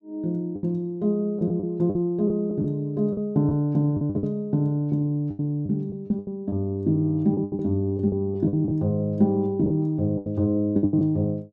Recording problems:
lost packets; 11% of the sound replaced, filled with the last packet

